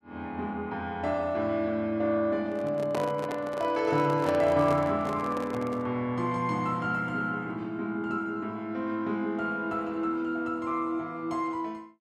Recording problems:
handling noise; from 2.5 to 6 s; peak +1 dB vs average level

